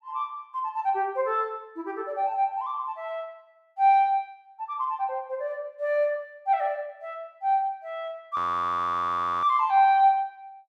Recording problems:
audio freezing; at 8.5 s for 1 s

